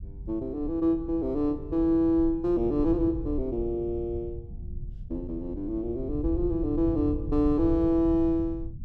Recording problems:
low-frequency rumble; below 100 Hz, SNR 10 dB

